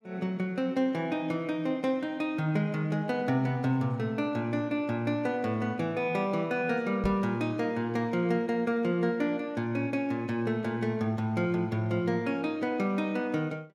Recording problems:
knock on the microphone; at 7 s; peak 0 dB vs average level

